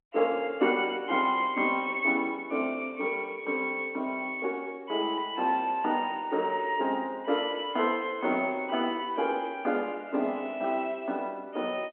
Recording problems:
telephone audio; 220 Hz to 3.3 kHz, G.711

